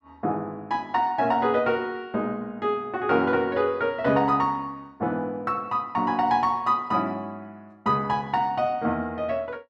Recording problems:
none

